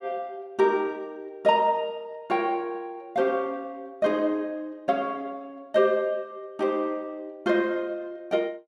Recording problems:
none

